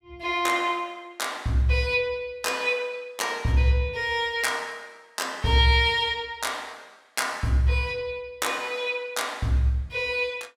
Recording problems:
none

